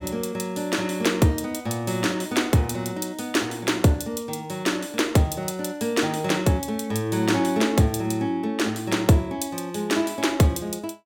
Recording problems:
none

